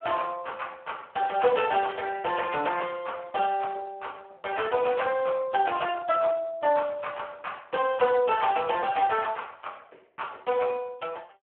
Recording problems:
telephone audio; 320 Hz to 3.1 kHz, Speex

